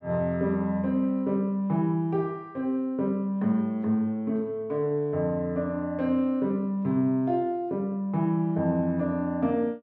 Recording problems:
none

